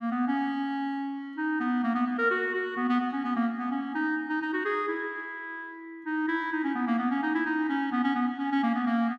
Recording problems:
none

